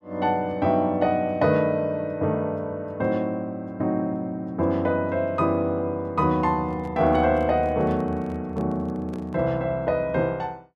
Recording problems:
handling noise; from 6.5 to 9.5 s; peak -11 dB vs average level

